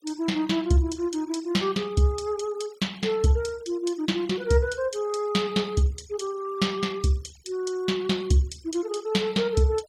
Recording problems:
noise reduction artefacts; signal-to-artefact ratio 24 dB

